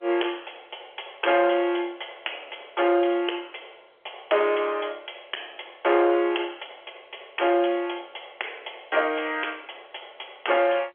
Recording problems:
telephone audio; 300 Hz to 3.4 kHz, G.711
distorted audio; soft clipping, signal-to-distortion ratio 11 dB

